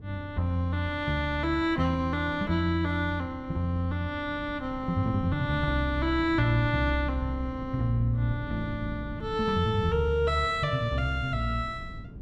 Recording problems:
wind on the microphone; below 180 Hz, SNR 15 dB

